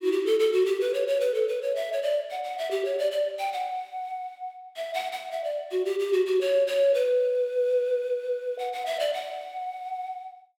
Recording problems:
none

